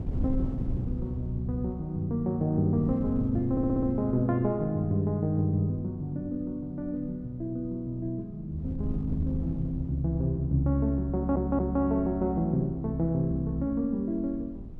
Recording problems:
wind noise; below 150 Hz, SNR 12 dB
stutter; at 3.5 s and at 11 s

